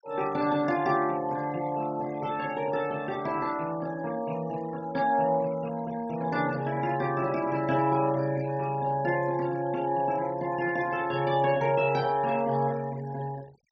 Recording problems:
low-pass filter; nothing above 8 kHz
denoising artefacts; signal-to-artefact ratio 20 dB

